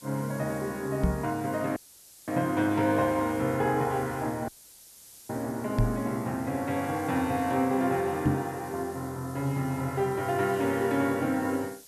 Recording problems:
background hiss; SNR 19 dB
knock on the microphone; at 1 s, at 6 s and at 8.5 s; peak +7 dB vs average level
dropout; at 2 s for 0.5 s and at 4.5 s for 1 s

